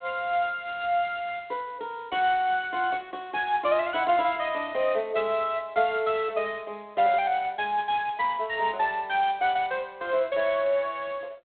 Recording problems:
phone line; 300 Hz to 3.7 kHz, G.726

